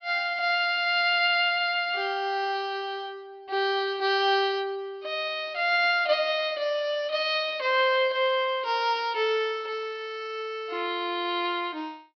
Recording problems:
treble missing; nothing above 5.5 kHz

